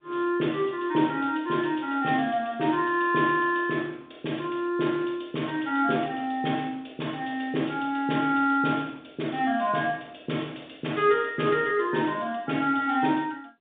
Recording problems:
telephone audio; 190 Hz to 3.7 kHz, G.711

